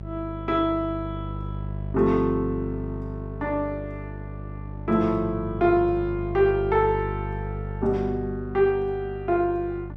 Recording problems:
hum; 50 Hz, harmonics up to 600 Hz, SNR 9 dB

